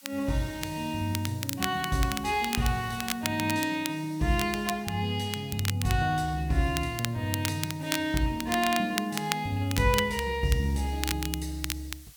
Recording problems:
background hiss; slope +3 dB per octave, SNR 23 dB
crackle; vinyl, SNR 7 dB

